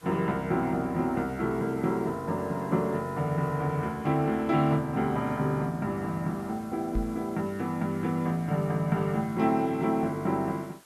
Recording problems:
hiss; SNR 26 dB
microphone thump; at 7 s; peak 0 dB vs average level

